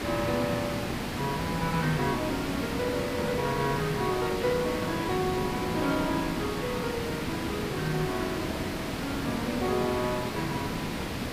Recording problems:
background hiss; slope -5 dB per octave, SNR 1 dB
wind on the microphone; below 370 Hz, SNR 18 dB

